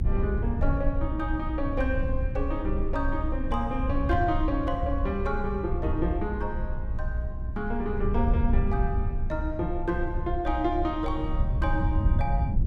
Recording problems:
hum; 60 Hz, harmonics up to 1 kHz, SNR 19 dB
rumble; below 84 Hz, strongest tone 22 Hz, SNR 0 dB

